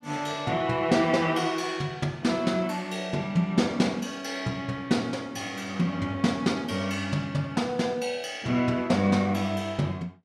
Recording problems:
none

